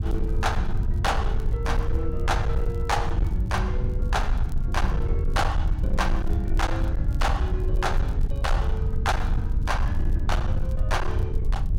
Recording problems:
distorted audio; hard clipping, signal-to-distortion ratio 12 dB
low-frequency rumble; below 80 Hz, SNR -3 dB
crackle; vinyl, SNR 28 dB

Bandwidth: 16.5 kHz